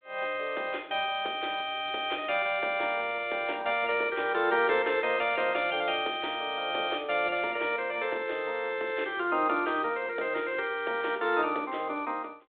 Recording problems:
phone line; 300 Hz to 3.9 kHz, G.726

